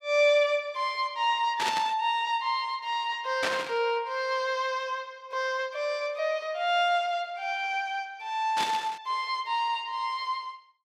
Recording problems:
static burst; at 1.5 s, at 3.5 s and at 8.5 s; peak +2 dB vs average level

